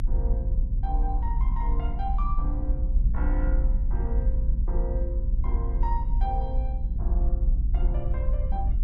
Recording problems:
low-frequency rumble; below 54 Hz, strongest tone 34 Hz, SNR -10 dB

